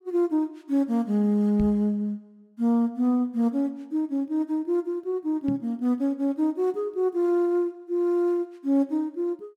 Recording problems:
microphone thump; at 1.5 s and at 5.5 s; peak -3 dB vs average level

